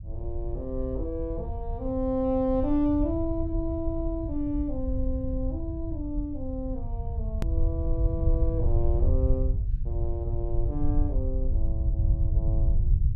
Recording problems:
low-frequency rumble; below 80 Hz, SNR -1 dB
edit click; at 7.5 s

